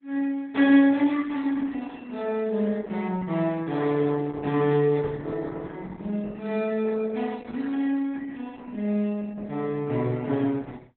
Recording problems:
lossy codec; Opus, log-spectral distance 3 dB

